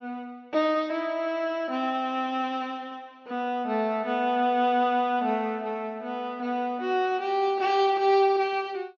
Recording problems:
low-pass filter; nothing above 6.7 kHz

